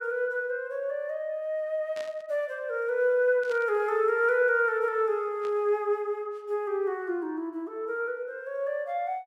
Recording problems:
static burst; at 2 s, at 3.5 s and at 5.5 s; peak -12 dB vs average level

